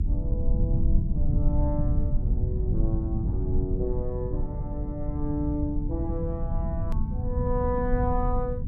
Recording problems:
hum; 50 Hz, harmonics up to 350 Hz, SNR 19 dB
rumble; below 100 Hz, SNR -4 dB
click at an edit; at 7 s

